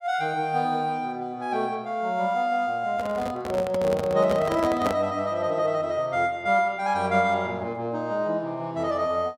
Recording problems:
microphone handling noise; from 3 to 5 s; peak +1 dB vs average level

